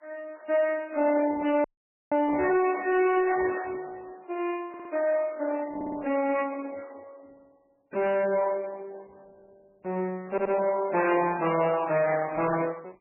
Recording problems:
lossy compression; Opus, then MP3, log-spectral distance 4 dB, nothing above 2.6 kHz
distorted audio; soft clipping, signal-to-distortion ratio 10 dB
dropout; at 1.5 s
audio stuttering; at 4.5 s, at 6 s and at 10 s

